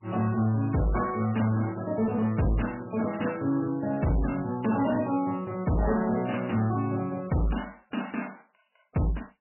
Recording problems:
codec artefacts; MP3, log-spectral distance 7 dB, nothing above 2.9 kHz
distortion; hard clipping, uneven, signal-to-distortion ratio 11 dB

